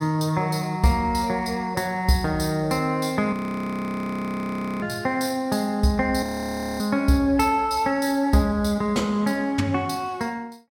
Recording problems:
audio freezing; at 3.5 s for 1.5 s and at 6 s for 0.5 s

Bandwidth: 16 kHz